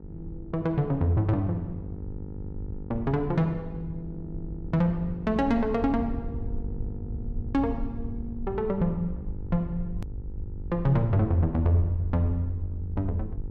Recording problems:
hum; 50 Hz, harmonics up to 950 Hz, SNR 16 dB
low-frequency rumble; below 88 Hz, SNR 11 dB
hard cut with a click; at 10 s

